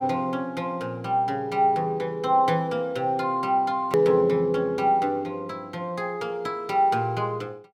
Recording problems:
click at an edit; at 4 s

